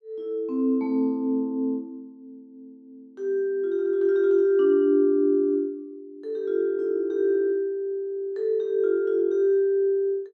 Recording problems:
none

